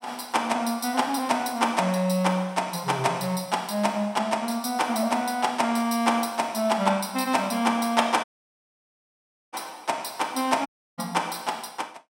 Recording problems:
audio cutting out; at 8 s for 1.5 s and at 11 s

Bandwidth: 16 kHz